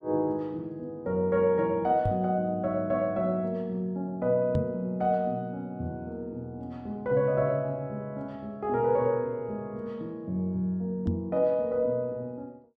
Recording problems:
knock on the microphone; at 2 s, at 4.5 s and at 11 s; peak +5 dB vs average level

